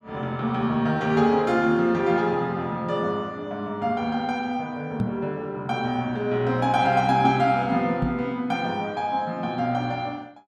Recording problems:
microphone thump; at 5 s and at 8 s; peak +2 dB vs average level

